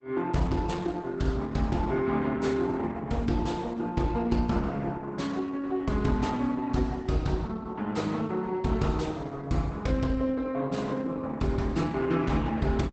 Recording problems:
codec artefacts; Opus, log-spectral distance 3 dB, nothing above 8 kHz

